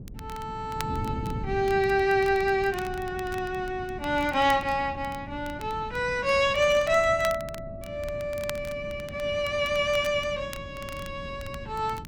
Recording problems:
wind noise; below 220 Hz, SNR 14 dB
crackling; vinyl, SNR 20 dB

